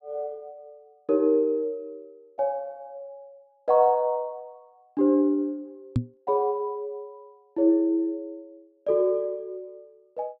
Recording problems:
knock on the microphone; at 6 s; peak +4 dB vs average level

